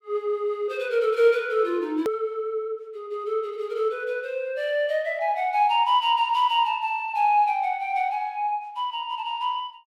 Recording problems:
edit click; at 2 s

